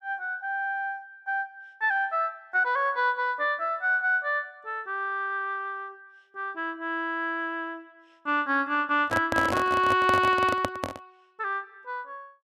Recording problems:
handling noise; from 9 to 11 s; peak +2 dB vs average level

